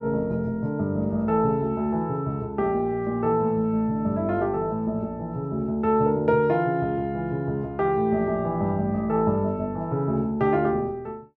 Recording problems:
none

